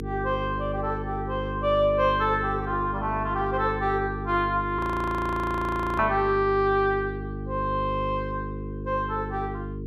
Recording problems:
hum; 50 Hz, harmonics up to 450 Hz, SNR 7 dB
frozen audio; at 5 s for 1 s

